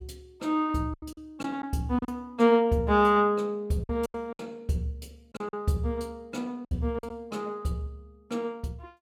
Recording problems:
packet loss; 7% of the sound replaced, filled with silence

